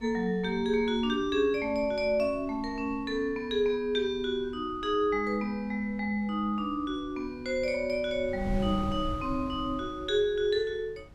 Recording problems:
wind noise; below 140 Hz, SNR 16 dB

